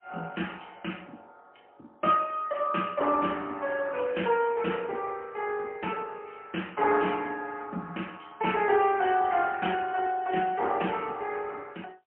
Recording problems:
telephone audio; 220 Hz to 3.1 kHz, AMR-NB, then MP3

